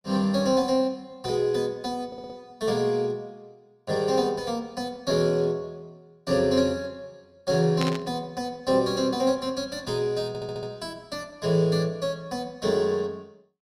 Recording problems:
audio stuttering; at 2 s and at 10 s
burst of static; at 8 s; peak -1 dB vs average level

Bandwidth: 15 kHz